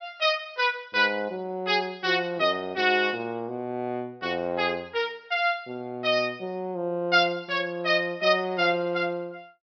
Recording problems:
low-pass filter; nothing above 5.5 kHz

